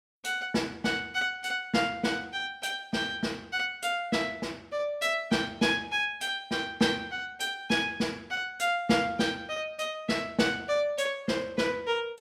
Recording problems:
none

